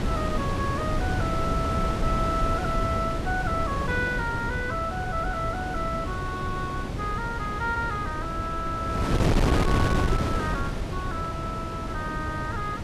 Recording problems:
wind noise; below 390 Hz, SNR -1 dB

